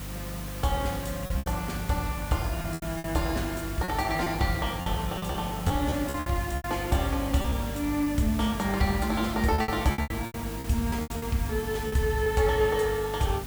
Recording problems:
hum; 50 Hz, harmonics up to 300 Hz, SNR 11 dB
background hiss; slope -3 dB per octave, SNR 12 dB
lost packets; 10% of the sound replaced, filled with repeated pitch periods

